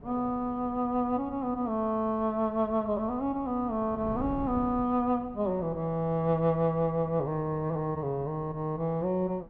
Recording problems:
wind noise; below 260 Hz, SNR 18 dB

